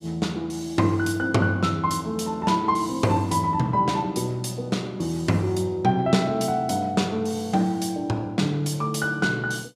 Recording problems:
none

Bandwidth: 14.5 kHz